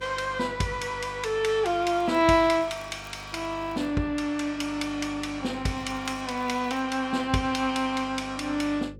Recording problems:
hum; 50 Hz, harmonics up to 550 Hz, SNR 20 dB
crackling; from 1.5 to 4 s and from 6 to 7 s; loose cable, SNR 30 dB

